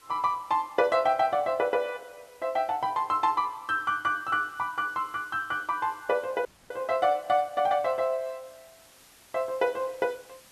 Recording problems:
background hiss; slope -1 dB per octave, SNR 27 dB
audio cutting out; at 6.5 s

